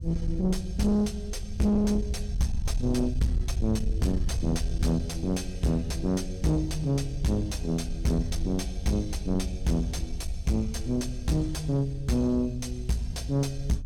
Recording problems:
distorted audio; soft clipping, signal-to-distortion ratio 7 dB
low-frequency rumble; below 74 Hz, SNR 7 dB

